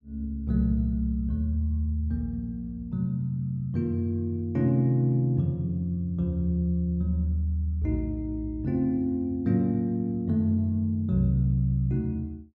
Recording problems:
none

